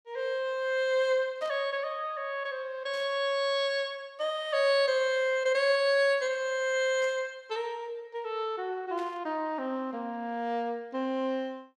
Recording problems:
burst of static; 4 times, first at 1.5 s; peak -15 dB vs average level

